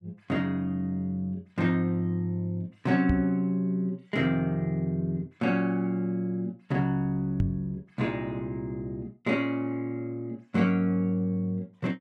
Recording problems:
knock on the microphone; at 3 s and at 7.5 s; peak +4 dB vs average level

